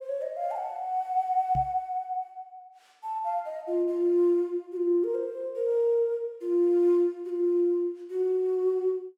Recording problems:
microphone thump; at 1.5 s; peak -3 dB vs average level

